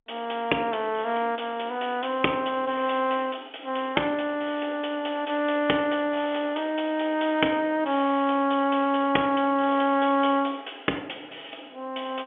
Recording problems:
telephone audio; 190 Hz to 3.4 kHz, G.711

